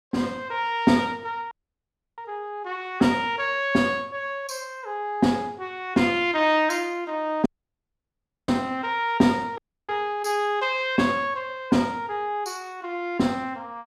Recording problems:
dropout; at 1.5 s for 0.5 s, at 7.5 s for 1 s and at 9.5 s

